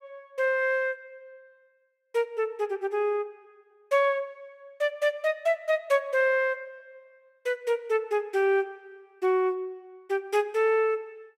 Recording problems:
none

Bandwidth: 16 kHz